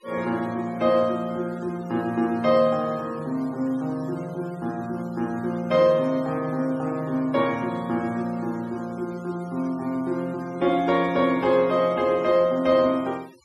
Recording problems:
denoising artefacts; signal-to-artefact ratio 24 dB

